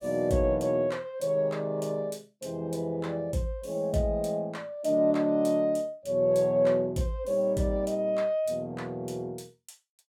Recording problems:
none

